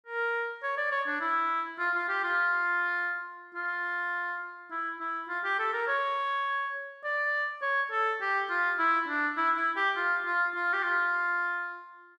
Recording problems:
none

